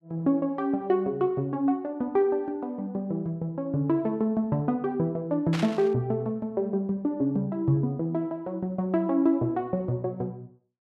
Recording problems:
burst of static; at 5.5 s; peak -3 dB vs average level

